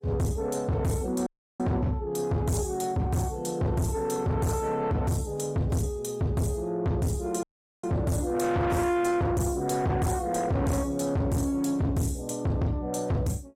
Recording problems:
lossy codec; AAC, log-spectral distance 2 dB, nothing above 15.5 kHz
distortion; soft clipping, signal-to-distortion ratio 6 dB
dropout; at 1.5 s and at 7.5 s

